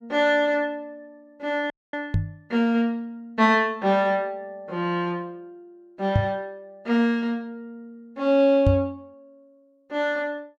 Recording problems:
audio cutting out; at 1.5 s
knock on the microphone; at 2 s, at 6 s and at 8.5 s; peak +6 dB vs average level

